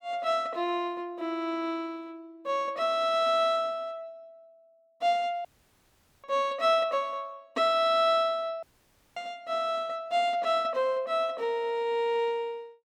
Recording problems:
dropout; at 5.5 s for 1 s and at 8.5 s for 0.5 s

